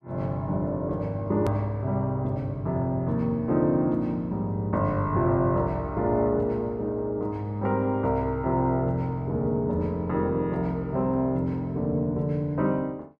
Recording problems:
click at an edit; at 1.5 s

